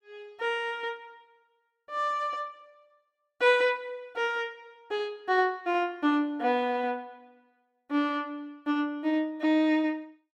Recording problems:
none

